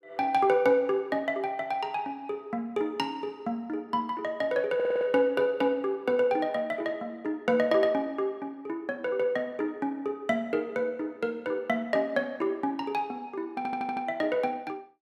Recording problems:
stutter; at 5 s and at 14 s

